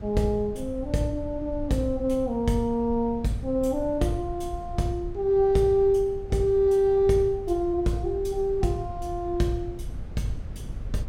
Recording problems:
low-frequency rumble; below 92 Hz, SNR 14 dB

